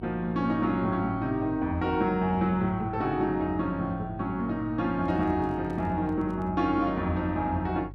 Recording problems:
hum; 50 Hz, harmonics up to 350 Hz, SNR 16 dB
handling noise; from 5 to 6.5 s; peak -11 dB vs average level

